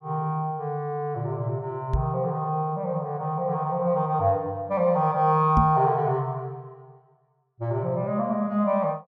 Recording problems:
knock on the microphone; at 2 s and at 5.5 s; peak +4 dB vs average level

